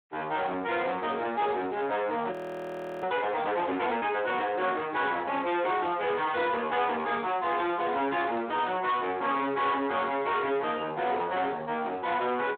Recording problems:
phone line; 280 Hz to 3.9 kHz, Speex
distortion; soft clipping, signal-to-distortion ratio 10 dB
frozen audio; at 2.5 s for 0.5 s

